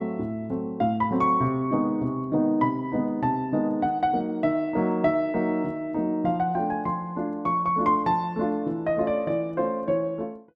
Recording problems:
none

